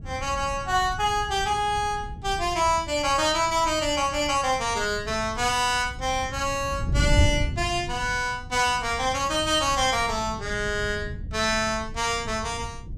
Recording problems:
wind noise; below 120 Hz, SNR 10 dB

